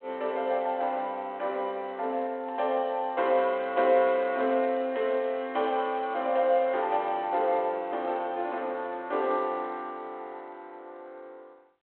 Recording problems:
telephone audio; 300 Hz to 3.6 kHz, G.726

